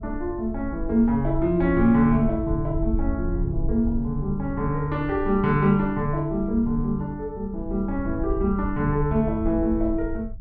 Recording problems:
rumble; below 76 Hz, SNR 9 dB

